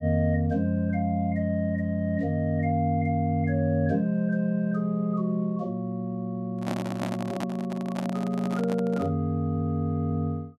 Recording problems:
microphone handling noise; from 6.5 to 9 s; peak -1 dB vs average level

